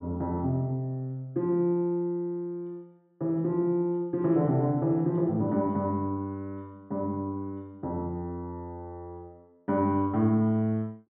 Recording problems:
treble missing; nothing above 3.7 kHz

